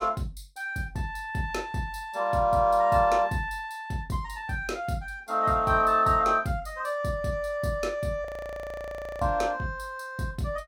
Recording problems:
frozen audio; at 8.5 s for 1 s

